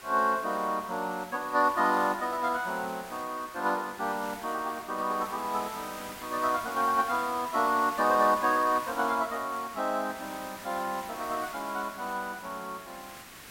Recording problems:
background hiss; SNR 15 dB

